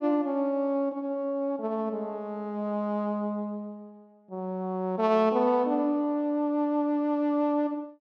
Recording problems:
none

